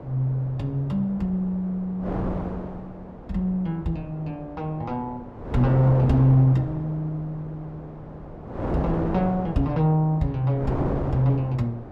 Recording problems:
wind noise; below 590 Hz, SNR 9 dB

